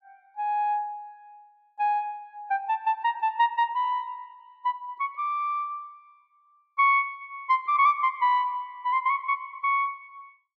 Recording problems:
none

